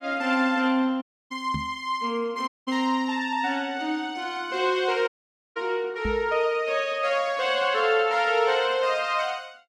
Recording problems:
dropout; at 1 s, at 2.5 s and at 5 s
microphone thump; at 1.5 s and at 6 s; peak -3 dB vs average level

